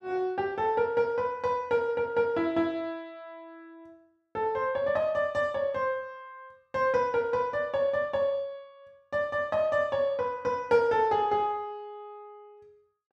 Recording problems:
none

